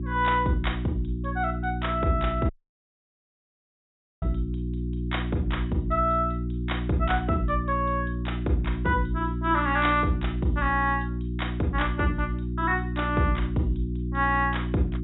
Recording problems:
treble cut off; nothing above 3.7 kHz
hum; 60 Hz, harmonics up to 360 Hz, SNR 3 dB
audio cutting out; at 2.5 s for 1.5 s

